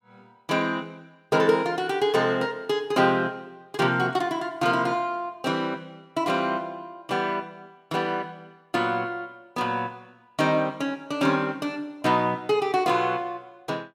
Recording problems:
none

